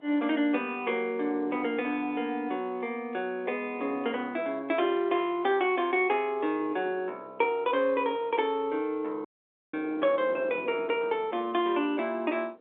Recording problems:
phone line; 260 Hz to 3.6 kHz, G.711
wind on the microphone; below 570 Hz, SNR 20 dB
dropout; at 9.5 s

